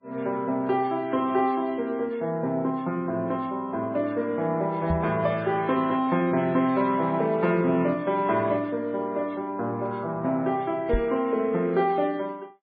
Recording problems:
lossy codec; MP3, then MP3, log-spectral distance 2 dB, nothing above 4.5 kHz
microphone bump; at 5 s and at 11 s; peak +1 dB vs average level

